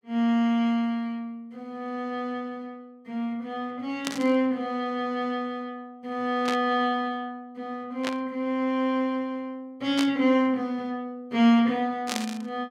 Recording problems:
burst of static; 5 times, first at 4 s; peak +1 dB vs average level

